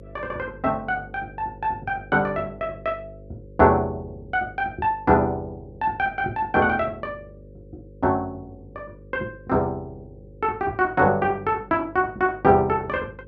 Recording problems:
hum; 50 Hz, harmonics up to 550 Hz, SNR 21 dB

